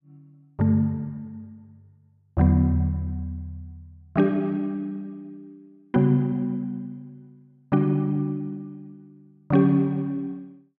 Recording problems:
none

